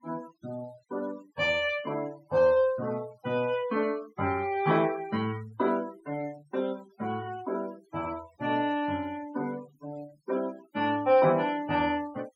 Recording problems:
noise reduction artefacts; signal-to-artefact ratio 21 dB

